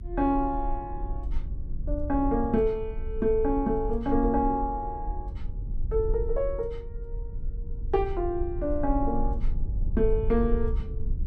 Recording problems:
rumble; below 56 Hz, strongest tone 22 Hz, SNR 6 dB

